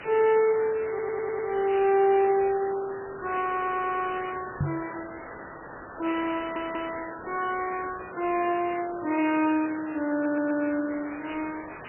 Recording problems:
lossy compression; MP3, log-spectral distance 18 dB, nothing above 2.5 kHz
hiss; SNR 13 dB
audio stuttering; 4 times, first at 1 s
microphone bump; at 4.5 s; peak +3 dB vs average level

